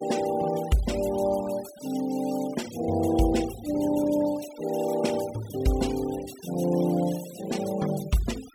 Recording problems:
denoising artefacts; signal-to-artefact ratio 15 dB

